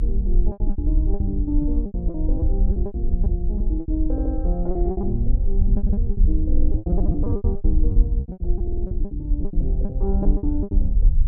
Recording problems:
low-frequency rumble; below 58 Hz, SNR -6 dB
packet loss; 18% of the sound replaced, filled with repeated pitch periods
audio stuttering; at 4 s, at 6.5 s and at 8.5 s

